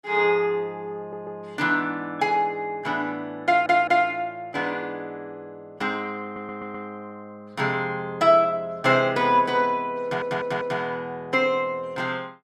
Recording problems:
stutter; 4 times, first at 1 s

